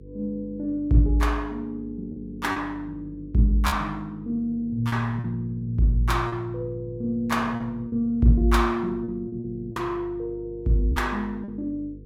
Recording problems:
hum; 50 Hz, harmonics up to 500 Hz, SNR 18 dB
lost packets; 5% of the sound replaced, filled with repeated pitch periods

